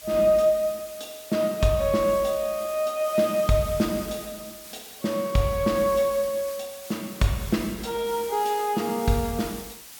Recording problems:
background hiss; slope +1 dB per octave, SNR 15 dB

